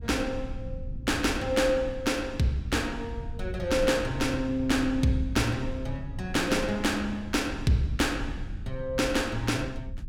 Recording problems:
rumble; below 98 Hz, SNR 11 dB

